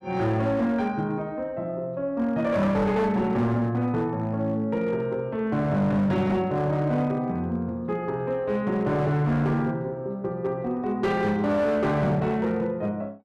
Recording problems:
distortion; hard clipping, signal-to-distortion ratio 11 dB

